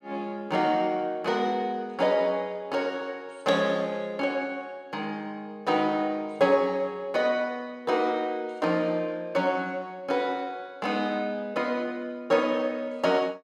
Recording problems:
none

